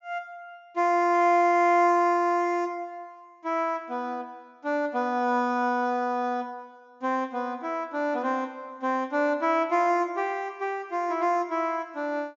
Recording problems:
low-pass filter; nothing above 7.3 kHz

